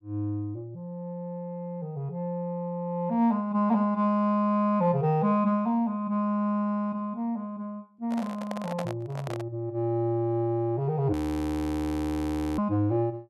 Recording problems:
handling noise; from 8 to 9.5 s; peak -3 dB vs average level
audio freezing; at 11 s for 1.5 s

